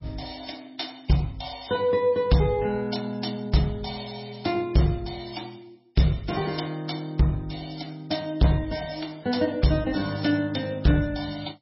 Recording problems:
lossy codec; MP3, log-spectral distance 7 dB, nothing above 5.5 kHz
distortion; hard clipping, signal-to-distortion ratio 12 dB

